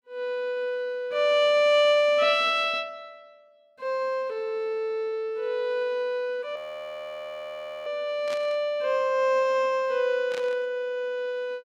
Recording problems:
frozen audio; at 6.5 s for 1.5 s
static burst; at 8.5 s and at 10 s; peak -9 dB vs average level

